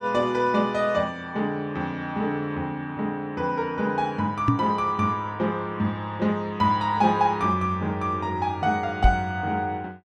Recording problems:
microphone thump; at 4.5 s and at 9 s; peak +8 dB vs average level

